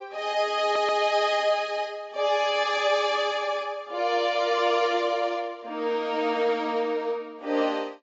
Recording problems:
lossy codec; AAC, log-spectral distance 2 dB, nothing above 7.6 kHz
stutter; at 0.5 s

